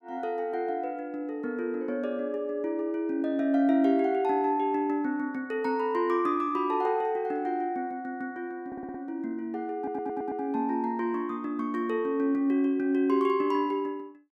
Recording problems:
audio stuttering; at 8.5 s and at 10 s

